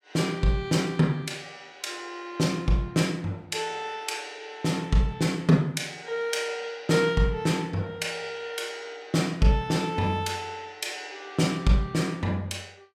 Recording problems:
none

